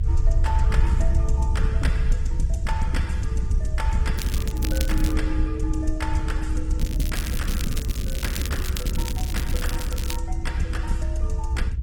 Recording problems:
codec artefacts; Opus, log-spectral distance 3 dB, nothing above 16.5 kHz
low-frequency rumble; below 66 Hz, SNR -7 dB
crackle; at 4 s and from 7 to 10 s; loose cable, SNR 2 dB

